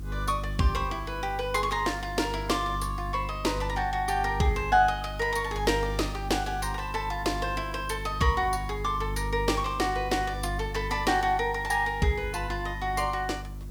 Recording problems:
hum; 50 Hz, harmonics up to 350 Hz, SNR 9 dB
hiss; SNR 25 dB

